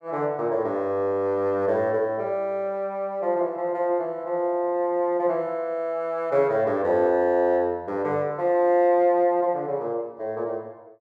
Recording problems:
none

